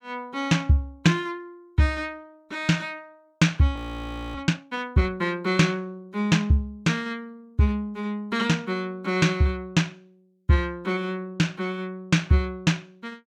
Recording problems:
audio freezing; at 4 s for 0.5 s

